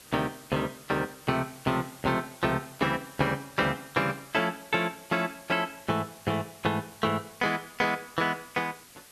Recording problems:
background hiss; SNR 20 dB

